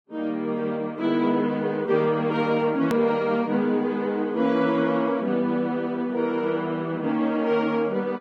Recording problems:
codec artefacts; Vorbis, log-spectral distance 2 dB, nothing above 17.7 kHz
click at an edit; at 3 s

